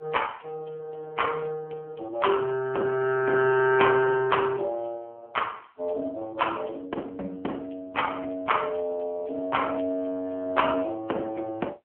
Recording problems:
phone line; 300 Hz to 3.2 kHz, AMR-NB

